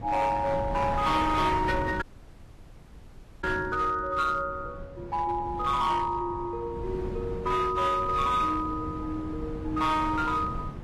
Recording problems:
lossy compression; AAC, log-spectral distance 2 dB, nothing above 13.1 kHz
distortion; hard clipping, signal-to-distortion ratio 12 dB
wind on the microphone; below 280 Hz, SNR 11 dB
audio cutting out; at 2 s for 1.5 s

